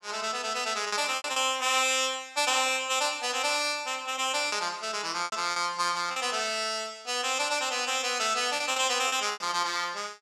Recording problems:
packet loss; 6% of the sound replaced, filled with repeated pitch periods

